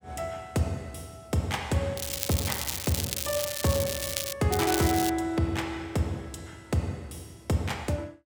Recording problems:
crackle; from 2 to 4.5 s and at 4.5 s; loose cable, SNR 2 dB

